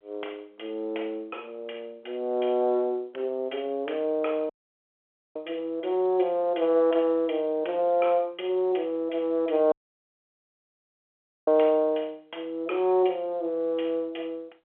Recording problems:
telephone audio; 340 Hz to 3.5 kHz, G.711
audio cutting out; at 4.5 s for 1 s and at 9.5 s for 2 s

